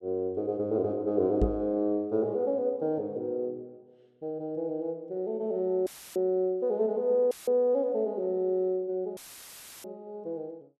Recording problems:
knock on the microphone; at 1.5 s; peak +5 dB vs average level
dropout; at 6 s, at 7.5 s and at 9 s for 0.5 s; filled with static

